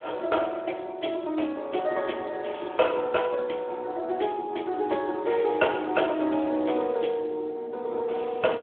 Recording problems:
phone line; 260 Hz to 3.4 kHz, Speex

